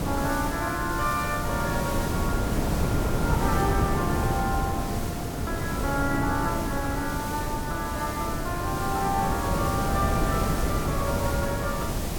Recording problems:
background hiss; slope -2 dB per octave, SNR 6 dB
wind on the microphone; below 390 Hz, SNR -1 dB

